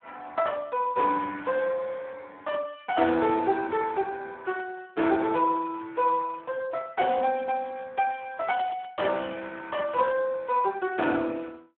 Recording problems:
phone line; 260 Hz to 3 kHz, Speex
static burst; at 8.5 s; peak -14 dB vs average level

